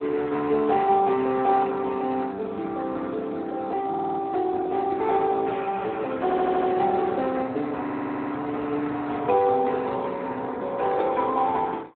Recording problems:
telephone audio; 220 Hz to 4 kHz, Speex
audio stuttering; at 4 s, at 6 s and at 8 s

